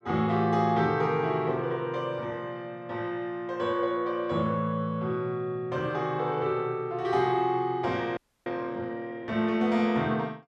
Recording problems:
frozen audio; at 8 s

